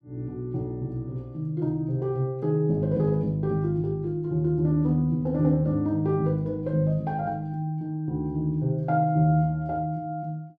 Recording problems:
none

